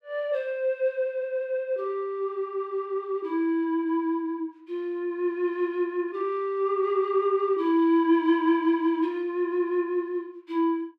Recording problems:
none

